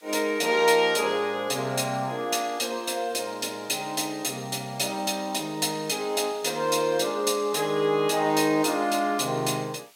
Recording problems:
hiss; slope +2 dB per octave, SNR 29 dB

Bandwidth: 16 kHz